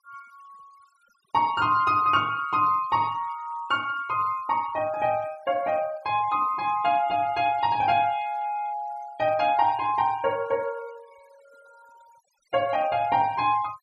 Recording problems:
denoising artefacts; signal-to-artefact ratio 25 dB

